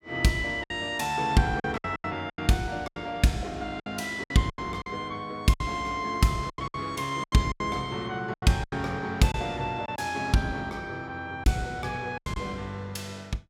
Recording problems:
lost packets; 10% of the sound replaced, filled with silence

